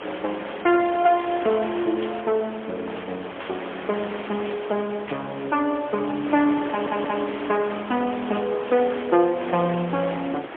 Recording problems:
phone line; 260 Hz to 3.5 kHz, AMR-NB, then MP3
hiss; SNR 10 dB
burst of static; 4 times, first at 2 s; peak -8 dB vs average level
audio stuttering; at 6.5 s

